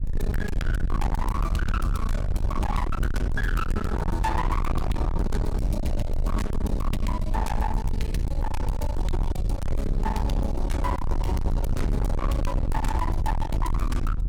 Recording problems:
distortion; hard clipping, uneven, signal-to-distortion ratio 6 dB
low-frequency rumble; below 84 Hz, SNR -2 dB

